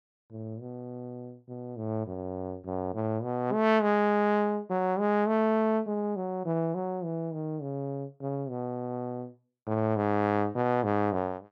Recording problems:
none

